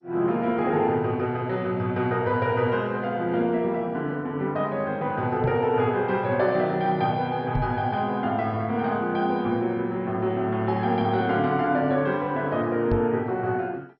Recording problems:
lossy codec; MP2, log-spectral distance 2 dB, nothing above 4.9 kHz
microphone bump; at 5.5 s, at 7.5 s and at 13 s; peak +2 dB vs average level

